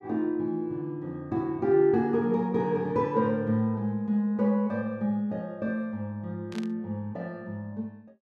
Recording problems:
static burst; at 6.5 s; peak -10 dB vs average level

